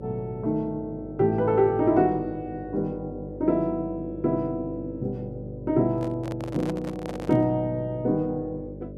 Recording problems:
hum; 50 Hz, harmonics up to 600 Hz, SNR 13 dB
handling noise; from 6 to 7.5 s; peak -5 dB vs average level

